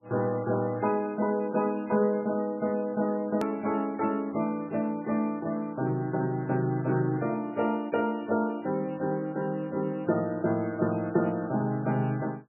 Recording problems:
codec artefacts; MP3, log-spectral distance 2 dB, nothing above 13.1 kHz
click at an edit; at 3.5 s

